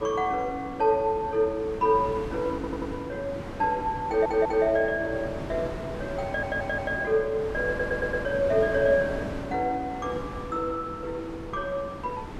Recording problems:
wind noise; below 750 Hz, SNR 10 dB
audio stuttering; 4 times, first at 2.5 s

